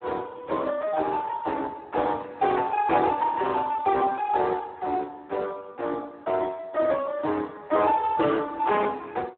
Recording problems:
phone line; 280 Hz to 2.1 kHz, Speex

